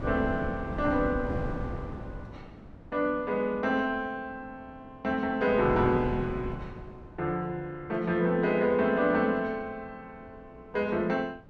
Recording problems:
wind noise; below 330 Hz, SNR 9 dB

